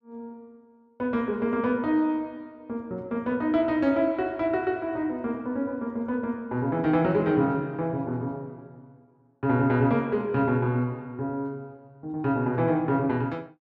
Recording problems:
none

